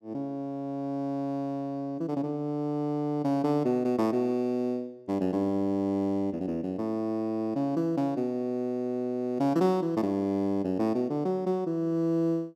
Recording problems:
none

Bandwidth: 13.5 kHz